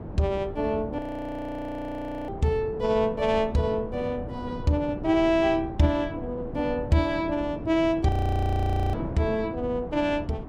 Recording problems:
wind on the microphone; below 360 Hz, SNR 11 dB
audio freezing; at 1 s for 1.5 s and at 8 s for 1 s

